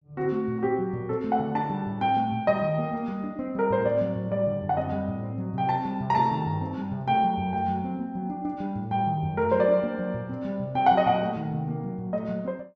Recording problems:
treble missing; nothing above 7.8 kHz

